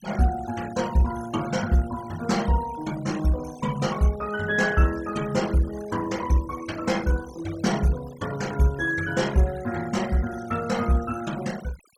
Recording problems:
denoising artefacts; signal-to-artefact ratio 16 dB

